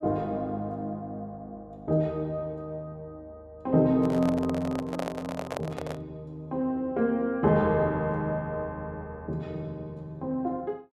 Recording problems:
microphone handling noise; from 4 to 6 s; peak 0 dB vs average level

